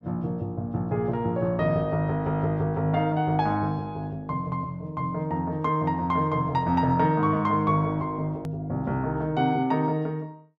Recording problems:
click at an edit; at 8.5 s

